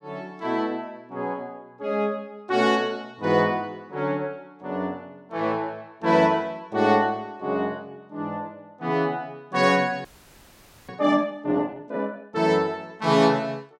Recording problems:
audio freezing; at 10 s for 1 s

